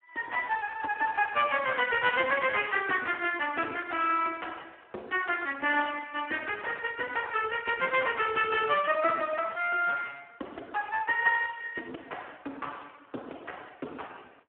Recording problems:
phone line; 260 Hz to 2.9 kHz, Speex

